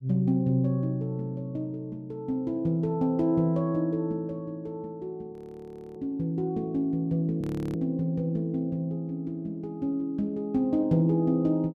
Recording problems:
frozen audio; at 5.5 s for 0.5 s and at 7.5 s

